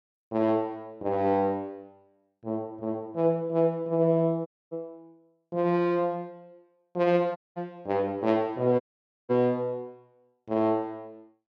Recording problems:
audio cutting out; at 4.5 s, at 7.5 s and at 9 s

